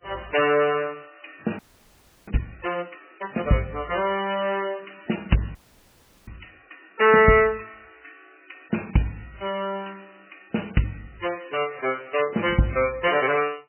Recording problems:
lossy compression; MP3, log-spectral distance 10 dB, nothing above 3 kHz
audio freezing; at 1.5 s for 0.5 s and at 5.5 s for 0.5 s

